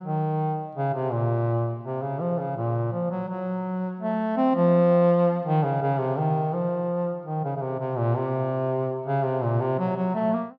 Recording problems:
none

